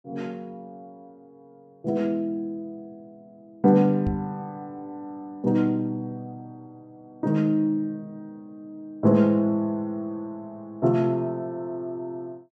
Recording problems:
microphone bump; at 4 s; peak +1 dB vs average level

